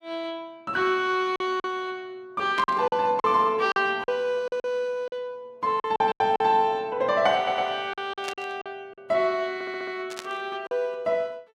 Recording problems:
lost packets; 8% of the sound replaced, filled with silence
burst of static; at 2.5 s, at 8 s and at 10 s; peak -4 dB vs average level
audio stuttering; at 7.5 s and at 9.5 s

